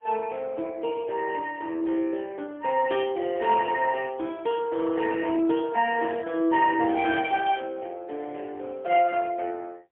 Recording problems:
telephone audio; 260 Hz to 2.8 kHz, AMR-NB, then MP3

